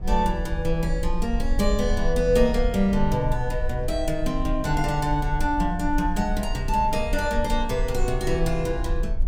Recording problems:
rumble; below 48 Hz, SNR 5 dB

